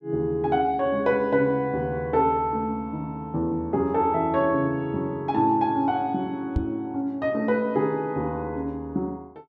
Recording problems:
microphone bump; at 6.5 s; peak +3 dB vs average level

